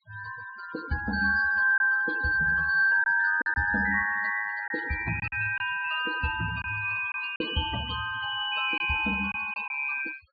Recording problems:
treble cut off; nothing above 4.8 kHz
denoising artefacts; signal-to-artefact ratio 15 dB
lost packets; 4% of the sound replaced, filled with silence

